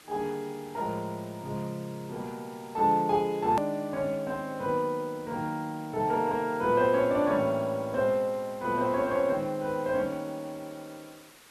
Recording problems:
hiss; slope -2 dB per octave, SNR 23 dB
edit click; at 3.5 s

